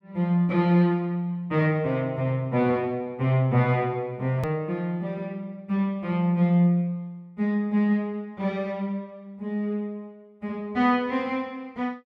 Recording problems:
edit click; at 4.5 s

